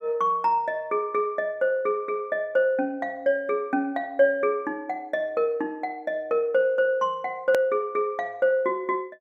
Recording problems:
edit click; at 7.5 s

